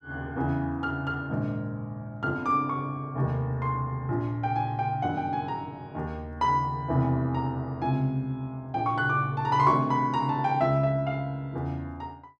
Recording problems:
none

